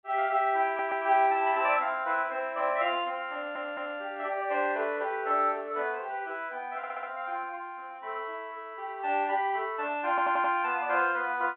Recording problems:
phone line; 260 Hz to 3.8 kHz, G.711
audio stuttering; 4 times, first at 0.5 s

